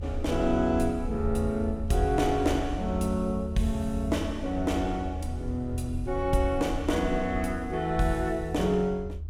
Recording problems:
rumble; below 80 Hz, SNR 8 dB

